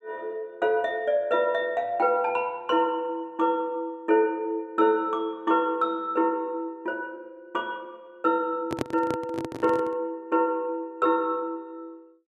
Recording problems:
handling noise; from 8.5 to 10 s; peak +2 dB vs average level

